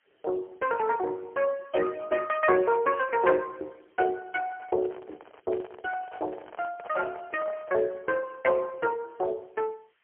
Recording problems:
telephone audio; 320 Hz to 2.8 kHz, AMR-NB, then MP3
hiss; SNR 41 dB
handling noise; from 4.5 to 8 s; peak -10 dB vs average level

